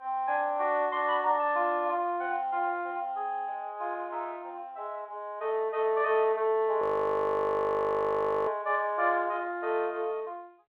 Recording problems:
telephone audio; 300 Hz to 3.3 kHz, G.726
frozen audio; at 7 s for 1.5 s

